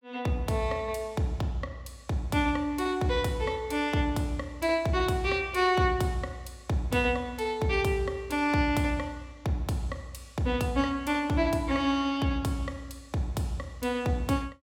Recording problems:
none

